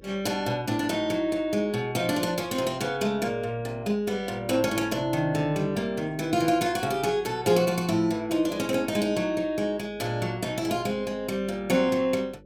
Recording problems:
hum; 50 Hz, harmonics up to 550 Hz, SNR 25 dB

